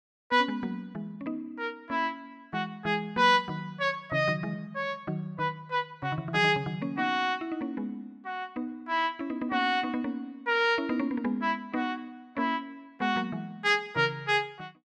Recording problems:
none

